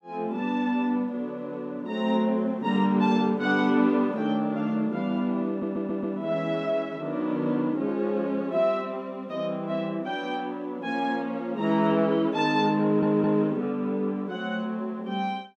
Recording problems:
stutter; at 5.5 s and at 13 s

